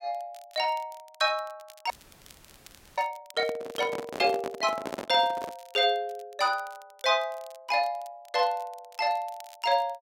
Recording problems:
crackling; vinyl, SNR 26 dB
audio freezing; at 2 s for 1 s
handling noise; from 3.5 to 5.5 s; peak -2 dB vs average level

